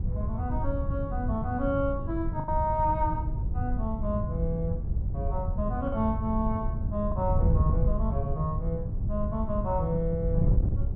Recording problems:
wind on the microphone; below 110 Hz, SNR -1 dB
lost packets; 1.6% of the sound replaced, filled with the last packet

